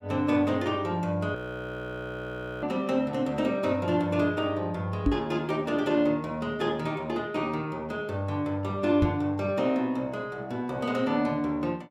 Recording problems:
audio freezing; at 1.5 s for 1.5 s
microphone bump; at 5 s and at 9 s; peak +7 dB vs average level

